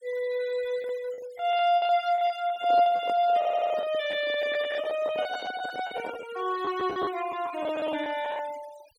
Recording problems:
noise reduction artefacts; signal-to-artefact ratio 17 dB
packet loss; 11% of the sound replaced, filled with the last packet
microphone handling noise; from 2.5 to 6.5 s; peak -6 dB vs average level
stutter; at 3.5 s

